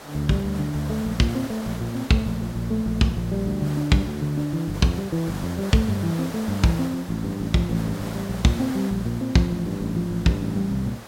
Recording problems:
background hiss; SNR 14 dB

